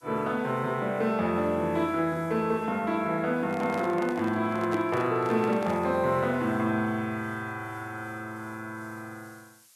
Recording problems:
hiss; slope +3 dB per octave, SNR 30 dB
microphone handling noise; from 3.5 to 6 s; peak -5 dB vs average level

